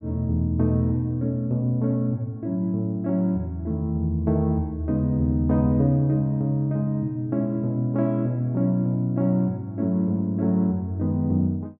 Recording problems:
none

